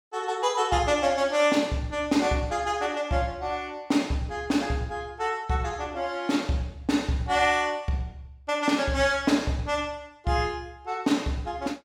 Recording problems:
none

